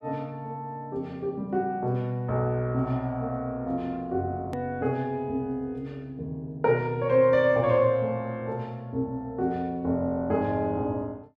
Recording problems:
edit click; at 4.5 s

